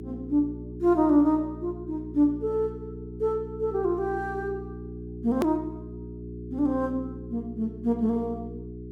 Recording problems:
mains hum; 60 Hz, harmonics up to 420 Hz, SNR 12 dB
click at an edit; at 5.5 s

